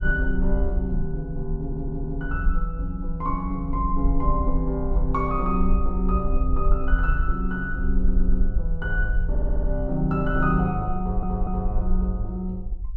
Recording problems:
low-frequency rumble; below 48 Hz, SNR 1 dB
stutter; 4 times, first at 1.5 s

